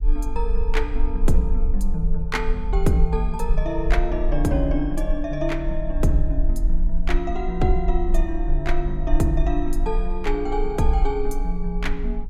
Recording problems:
rumble; below 40 Hz, strongest tone 20 Hz, SNR 1 dB

